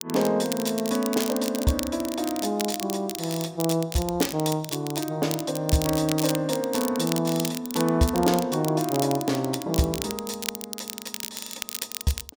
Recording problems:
crackling; vinyl, SNR 8 dB

